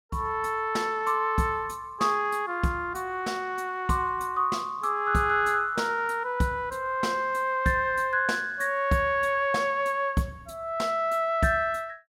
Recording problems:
none

